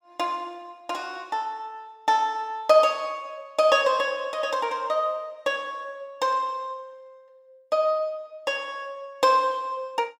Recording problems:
none

